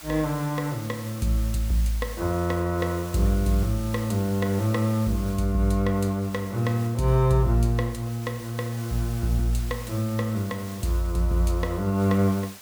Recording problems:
background hiss; slope 0 dB per octave, SNR 17 dB

